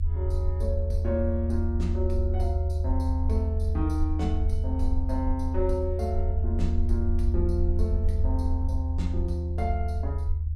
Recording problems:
rumble; below 80 Hz, SNR -5 dB

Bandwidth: 16 kHz